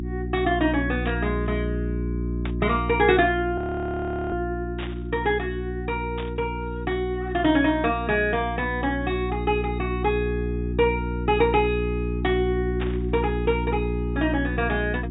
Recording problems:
treble missing; nothing above 4 kHz
electrical hum; 60 Hz, harmonics up to 360 Hz, SNR 5 dB
static burst; 5 times, first at 1 s; peak -5 dB vs average level
frozen audio; at 3.5 s for 0.5 s

